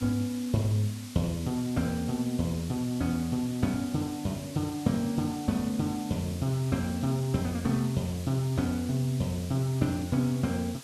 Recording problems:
background hiss; slope +1 dB per octave, SNR 15 dB

